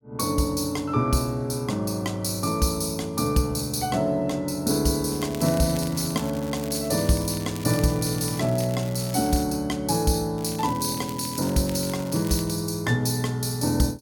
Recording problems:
crackle; from 5 to 9.5 s and from 10 to 13 s; loose cable, SNR 16 dB

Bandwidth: 18 kHz